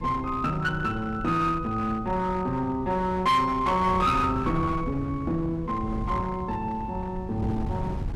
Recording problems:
distortion; hard clipping, uneven, signal-to-distortion ratio 11 dB
wind on the microphone; below 170 Hz, SNR 10 dB

